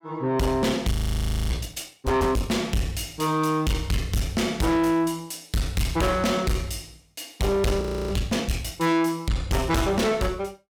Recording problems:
distorted audio; soft clipping, signal-to-distortion ratio 6 dB
audio freezing; at 1 s for 0.5 s and at 8 s

